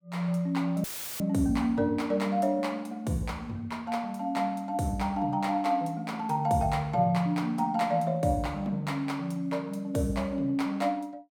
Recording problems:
audio cutting out; at 1 s; filled with static

